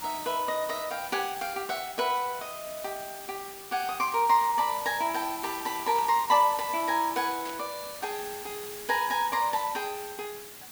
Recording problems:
hiss; slope 0 dB per octave, SNR 11 dB
static burst; at 6 s and at 7.5 s; peak -11 dB vs average level

